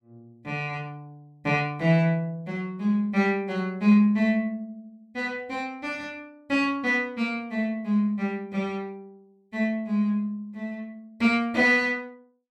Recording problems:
none

